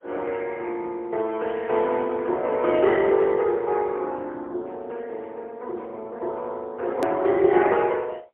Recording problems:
telephone audio; 300 Hz to 3.2 kHz, AMR-NB, then MP3
edit click; at 7 s

